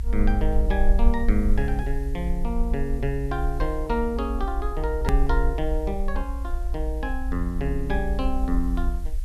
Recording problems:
hiss; SNR 25 dB
rumble; below 54 Hz, SNR -1 dB
click at an edit; at 5 s

